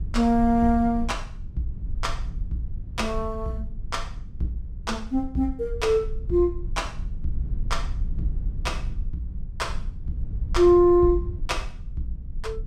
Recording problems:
low-frequency rumble; below 64 Hz, SNR 9 dB

